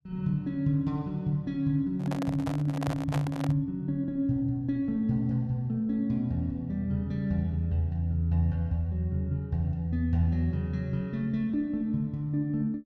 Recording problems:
microphone handling noise; from 2 to 3.5 s; peak -2 dB vs average level

